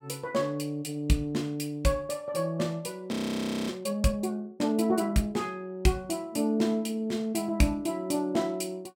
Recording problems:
audio freezing; at 3 s for 0.5 s

